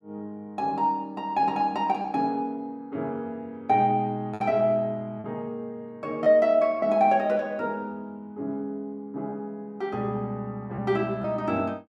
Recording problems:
packet loss; 1.9% of the sound replaced, filled with repeated pitch periods

